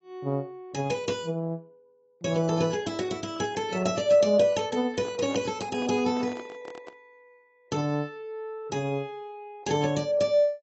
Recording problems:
lossy codec; AAC, log-spectral distance 2 dB, nothing above 6.9 kHz
handling noise; from 5 to 7 s; peak -8 dB vs average level

